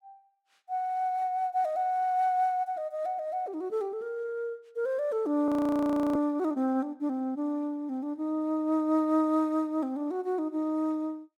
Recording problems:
frozen audio; at 5.5 s for 0.5 s

